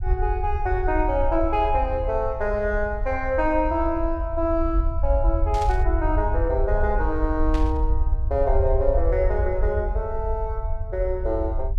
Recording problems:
rumble; below 66 Hz, SNR 2 dB
static burst; at 5.5 s and at 7.5 s; peak -9 dB vs average level

